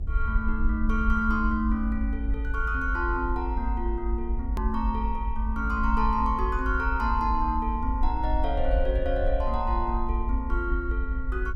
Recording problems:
low-frequency rumble; below 56 Hz, SNR 1 dB
click at an edit; at 4.5 s

